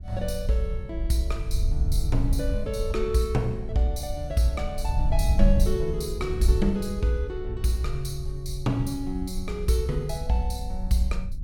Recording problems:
wind on the microphone; below 64 Hz, SNR 2 dB

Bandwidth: 17 kHz